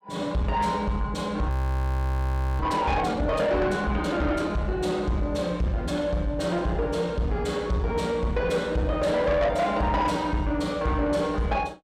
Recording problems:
distortion; soft clipping, signal-to-distortion ratio 10 dB
audio freezing; at 1.5 s for 1 s

